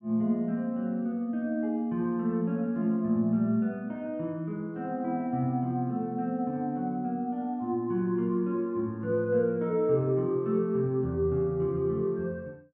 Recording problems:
none

